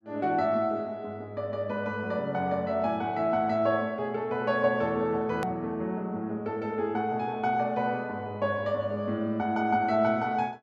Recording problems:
edit click; at 5.5 s

